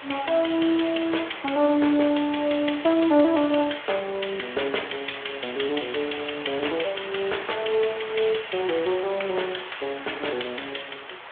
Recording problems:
phone line; 300 Hz to 3.6 kHz, Speex
background hiss; SNR 14 dB

